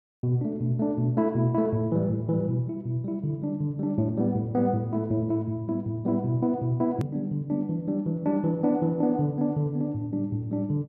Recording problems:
click at an edit; at 7 s

